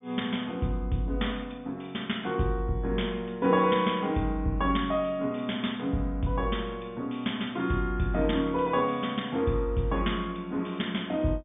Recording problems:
low-pass filter; nothing above 3.6 kHz

